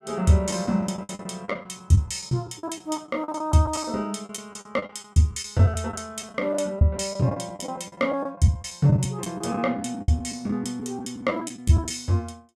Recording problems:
packet loss; 14% of the sound replaced, filled with the last packet

